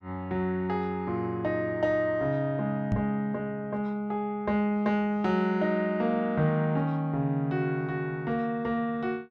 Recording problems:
microphone bump; at 3 s; peak +3 dB vs average level

